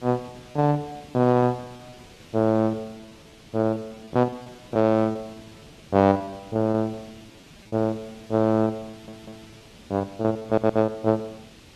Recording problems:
background hiss; SNR 23 dB
lost packets; 14% of the sound replaced, filled with repeated pitch periods
audio stuttering; at 9 s and at 10 s

